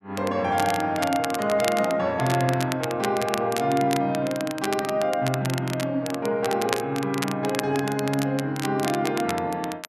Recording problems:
crackling; vinyl, SNR 10 dB

